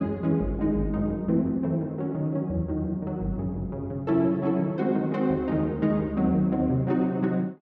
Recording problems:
none

